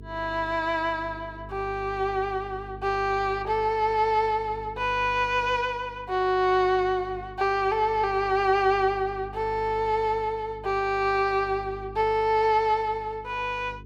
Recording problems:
hum; 50 Hz, harmonics up to 450 Hz, SNR 19 dB

